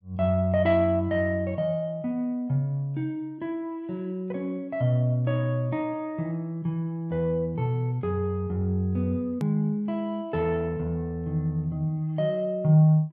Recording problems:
hard cut with a click; at 9.5 s

